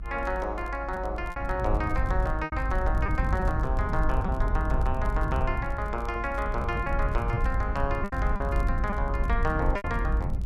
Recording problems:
low-frequency rumble; below 76 Hz, SNR 0 dB
crackling; vinyl, SNR 28 dB
lost packets; 5% of the sound replaced, filled with repeated pitch periods

